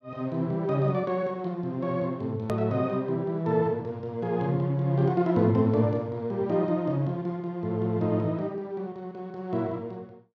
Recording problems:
hard cut with a click; at 2.5 s

